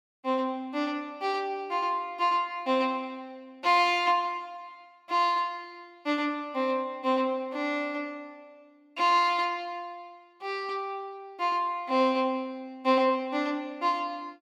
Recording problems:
none

